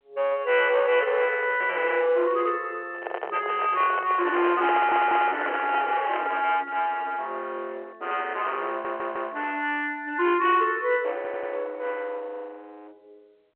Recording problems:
phone line; 320 Hz to 3.7 kHz, G.711
distortion; hard clipping, signal-to-distortion ratio 10 dB
microphone handling noise; from 3 to 6.5 s; peak 0 dB vs average level
stutter; at 4.5 s, at 8.5 s and at 11 s

